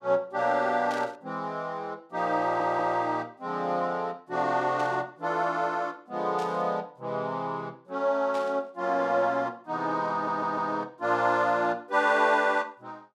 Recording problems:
burst of static; 4 times, first at 1 s; peak -11 dB vs average level
stutter; at 2.5 s and at 10 s

